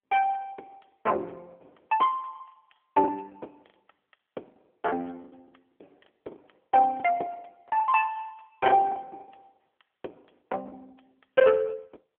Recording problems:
telephone audio; 320 Hz to 3.1 kHz, AMR-NB
lost packets; 14% of the sound replaced, filled with the last packet

